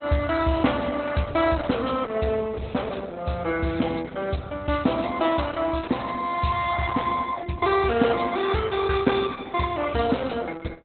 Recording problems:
codec artefacts; Opus, log-spectral distance 5 dB, nothing above 4 kHz

